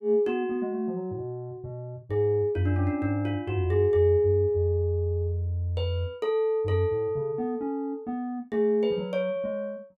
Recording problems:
none

